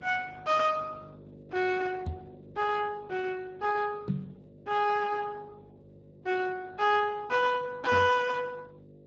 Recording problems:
codec artefacts; Speex, log-spectral distance 4 dB
hum; 50 Hz, harmonics up to 600 Hz, SNR 22 dB
microphone thump; at 2 s, at 4 s and at 8 s; peak +2 dB vs average level

